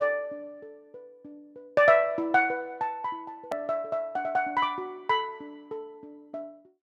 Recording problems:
edit click; at 3.5 s

